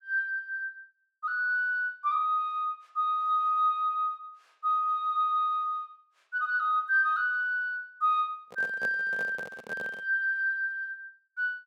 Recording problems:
handling noise; from 8.5 to 10 s; peak -8 dB vs average level

